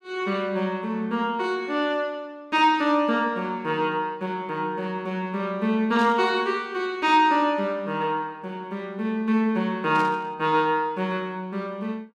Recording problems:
static burst; at 6 s and at 10 s; peak -10 dB vs average level

